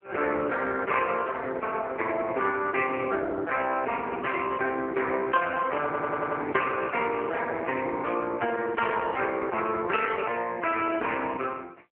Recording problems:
phone line; 300 Hz to 3.1 kHz, AMR-NB
audio stuttering; at 6 s

